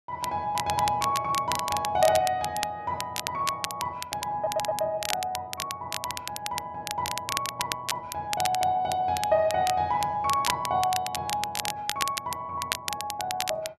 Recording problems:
crackling; vinyl, SNR 5 dB
audio stuttering; at 4.5 s

